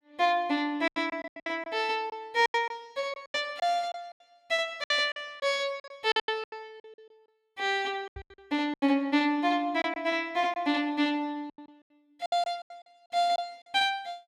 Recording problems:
packet loss; 14% of the sound replaced, filled with silence
knock on the microphone; at 8 s; peak -11 dB vs average level

